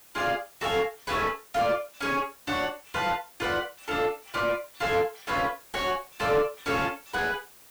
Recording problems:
distortion; soft clipping, signal-to-distortion ratio 6 dB
background hiss; slope -1 dB per octave, SNR 22 dB

